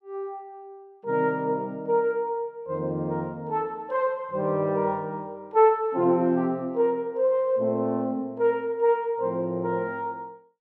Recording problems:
none

